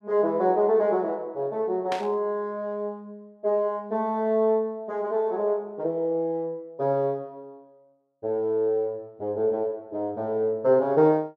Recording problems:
static burst; at 2 s; peak -4 dB vs average level

